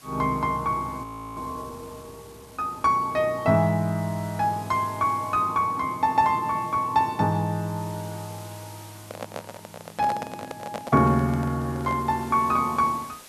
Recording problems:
hiss; slope -1 dB per octave, SNR 22 dB
audio freezing; at 1 s
microphone handling noise; from 9 to 12 s; peak -4 dB vs average level

